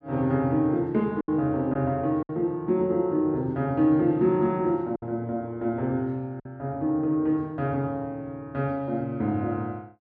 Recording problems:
packet loss; 3% of the sound replaced, filled with silence

